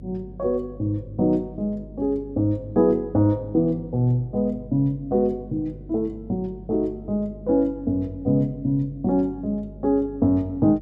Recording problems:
hum; 50 Hz, harmonics up to 550 Hz, SNR 18 dB

